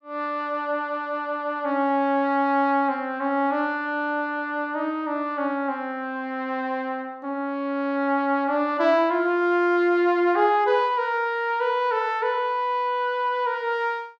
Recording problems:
none

